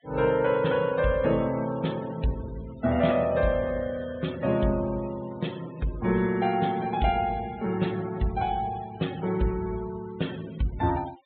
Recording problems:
treble missing; nothing above 4 kHz
noise reduction artefacts; signal-to-artefact ratio 20 dB

